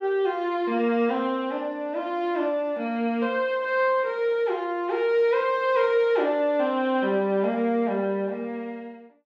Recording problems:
none

